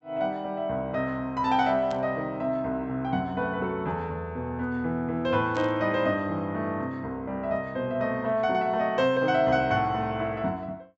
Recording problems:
treble missing; nothing above 7.8 kHz
static burst; at 2 s and at 5.5 s; peak -12 dB vs average level

